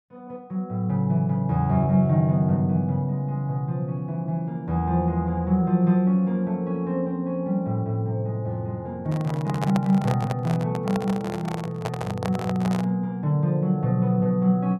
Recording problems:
microphone handling noise; from 9 to 13 s; peak -2 dB vs average level

